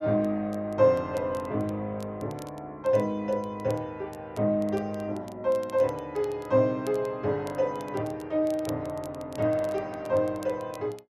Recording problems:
crackling; vinyl, SNR 25 dB

